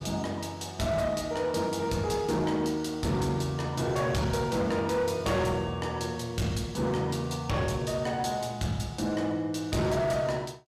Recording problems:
distorted audio; hard clipping, signal-to-distortion ratio 11 dB

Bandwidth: 14 kHz